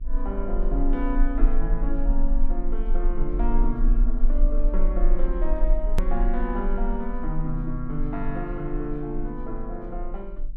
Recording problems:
hum; 60 Hz, harmonics up to 600 Hz, SNR 22 dB
low-frequency rumble; below 34 Hz, strongest tone 22 Hz, SNR -3 dB
click at an edit; at 6 s

